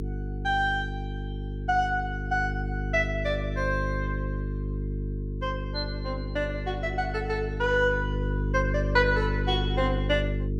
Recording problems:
hum; 50 Hz, harmonics up to 450 Hz, SNR 3 dB

